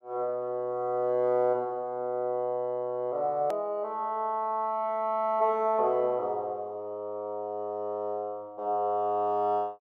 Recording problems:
click at an edit; at 3.5 s

